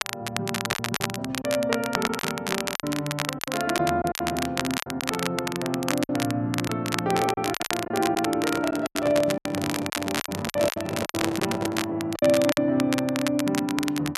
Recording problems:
crackle; vinyl, SNR 4 dB
packet loss; 10% of the sound replaced, filled with silence
handling noise; from 8.5 to 12 s; peak +1 dB vs average level

